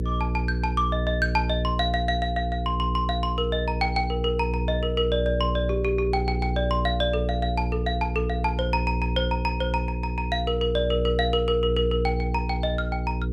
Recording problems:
mains hum; 60 Hz, harmonics up to 480 Hz, SNR 2 dB

